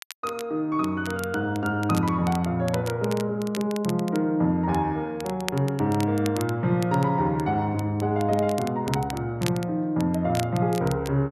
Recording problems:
crackling; vinyl, SNR 16 dB

